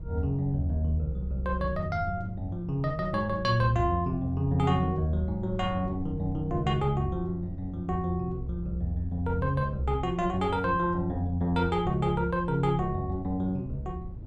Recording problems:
wind on the microphone; below 120 Hz, SNR 13 dB

